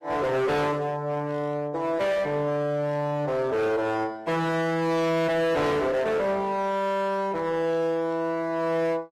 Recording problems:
lossy compression; AAC, log-spectral distance 2 dB, nothing above 14.1 kHz
distortion; hard clipping, signal-to-distortion ratio 7 dB

